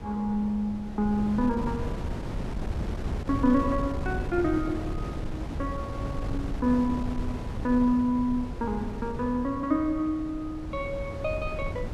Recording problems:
wind on the microphone; below 230 Hz, SNR 7 dB

